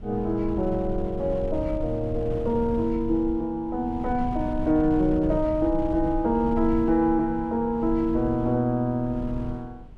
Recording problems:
wind on the microphone; below 120 Hz, SNR 11 dB

